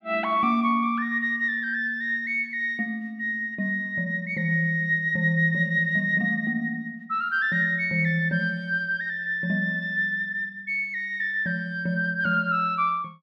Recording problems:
none

